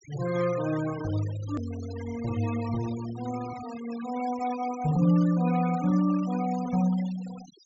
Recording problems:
treble missing; nothing above 8 kHz
noise reduction artefacts; signal-to-artefact ratio 16 dB
hard cut with a click; at 1.5 s

